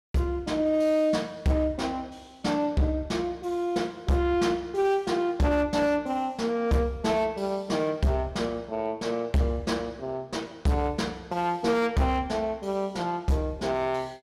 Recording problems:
distortion; hard clipping, signal-to-distortion ratio 11 dB

